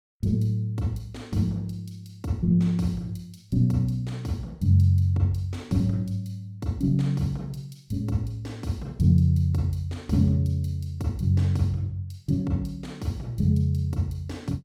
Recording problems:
none

